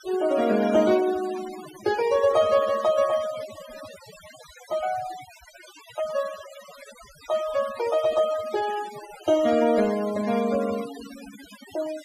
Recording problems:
denoising artefacts; signal-to-artefact ratio 16 dB

